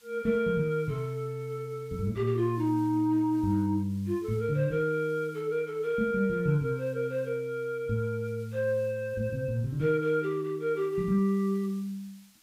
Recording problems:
hiss; SNR 29 dB

